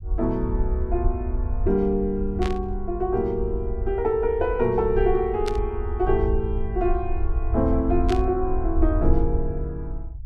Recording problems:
rumble; below 66 Hz, SNR 4 dB
static burst; at 2.5 s, at 5.5 s and at 8 s; peak -4 dB vs average level

